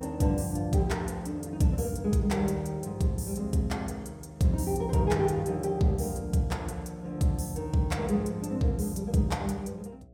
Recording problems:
hum; 60 Hz, harmonics up to 720 Hz, SNR 26 dB

